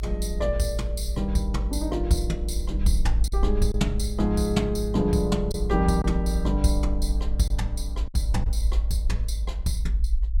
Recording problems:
rumble; below 54 Hz, strongest tone 52 Hz, SNR 1 dB
lost packets; 2% of the sound replaced, filled with silence

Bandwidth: 17 kHz